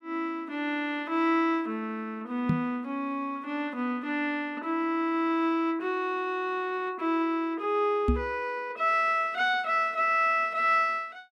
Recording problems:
knock on the microphone; at 2.5 s and at 8 s; peak +6 dB vs average level

